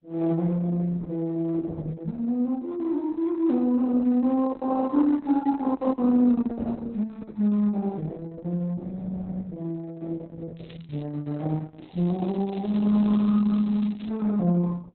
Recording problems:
codec artefacts; Opus, log-spectral distance 3 dB, nothing above 4.1 kHz
crackling; at 11 s and from 12 to 14 s; loose cable, SNR 27 dB

